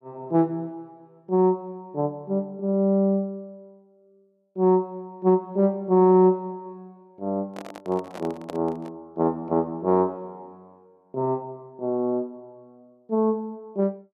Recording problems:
handling noise; from 7.5 to 9 s; peak -7 dB vs average level

